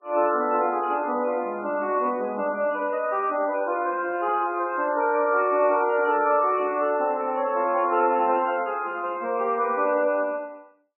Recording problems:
codec artefacts; MP3, log-spectral distance 3 dB, nothing above 2.7 kHz

